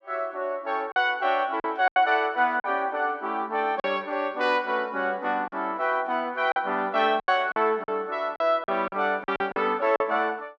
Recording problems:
packet loss; 7% of the sound replaced, filled with silence

